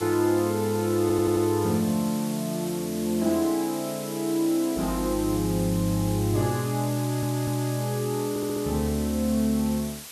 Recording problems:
hiss; slope +1 dB per octave, SNR 12 dB
stutter; at 1 s, at 7 s and at 8.5 s

